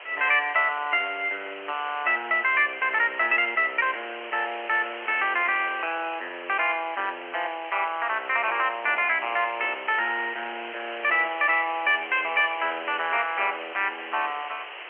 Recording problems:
telephone audio; 340 Hz to 3.1 kHz, G.711
background hiss; SNR 13 dB

